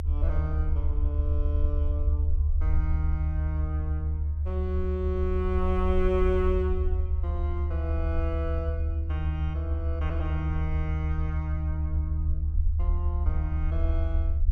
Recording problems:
rumble; below 76 Hz, strongest tone 76 Hz, SNR -6 dB

